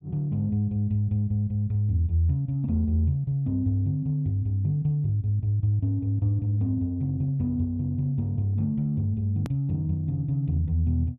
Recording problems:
edit click; at 9.5 s

